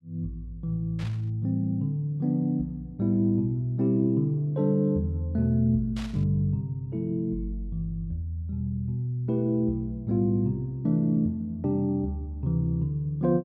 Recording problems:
static burst; at 1 s and at 6 s; peak -11 dB vs average level

